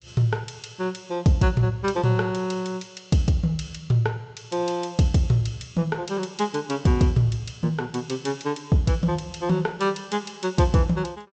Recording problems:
low-pass filter; nothing above 8 kHz

